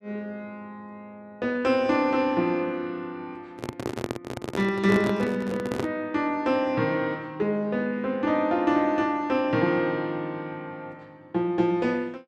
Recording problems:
microphone handling noise; from 3.5 to 6 s; peak +1 dB vs average level

